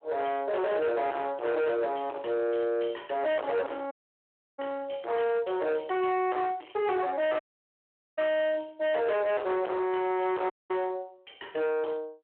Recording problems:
telephone audio; 990 Hz to 3 kHz, Speex
distorted audio; soft clipping, signal-to-distortion ratio 7 dB
audio cutting out; at 4 s for 0.5 s, at 7.5 s for 1 s and at 11 s

